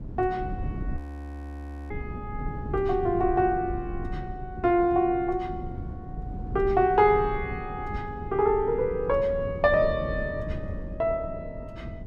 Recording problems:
low-frequency rumble; below 180 Hz, SNR 11 dB
audio freezing; at 1 s for 1 s

